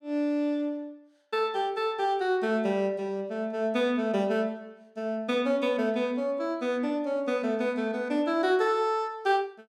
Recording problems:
none

